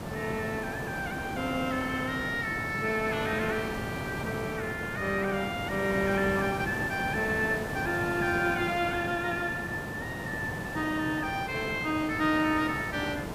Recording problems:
hiss; slope -7 dB per octave, SNR 6 dB

